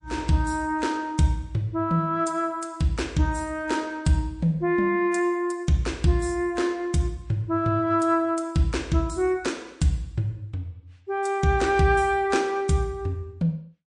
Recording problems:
lossy codec; MP3, log-spectral distance 2 dB, nothing above 8.7 kHz

